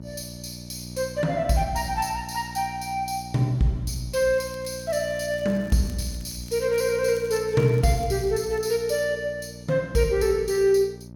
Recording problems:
hum; 60 Hz, harmonics up to 660 Hz, SNR 16 dB
crackle; from 4.5 to 8.5 s; loose cable, SNR 26 dB

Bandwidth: 18 kHz